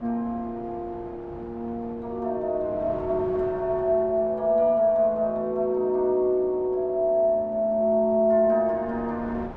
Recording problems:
wind noise; below 730 Hz, SNR 20 dB

